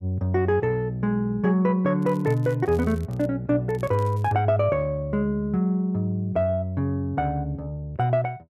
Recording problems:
crackle; from 2 to 3.5 s and at 3.5 s; loose cable, SNR 28 dB

